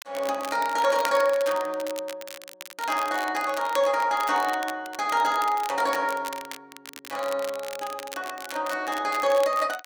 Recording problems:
crackle; vinyl, SNR 14 dB

